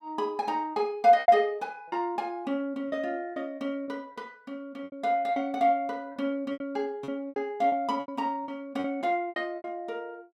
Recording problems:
packet loss; 11% of the sound replaced, filled with repeated pitch periods

